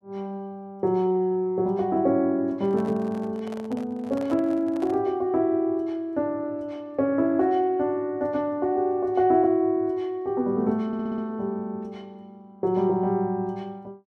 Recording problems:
microphone handling noise; from 2.5 to 5 s; peak -11 dB vs average level
stutter; at 11 s

